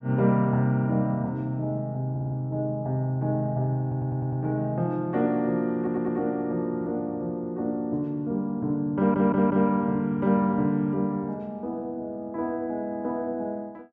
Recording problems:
stutter; 4 times, first at 2 s

